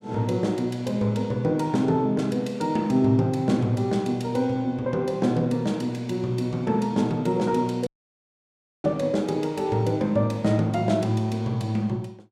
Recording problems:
dropout; at 8 s for 1 s

